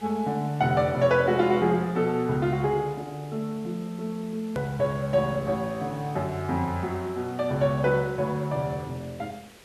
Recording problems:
hiss; SNR 23 dB
click at an edit; at 4.5 s

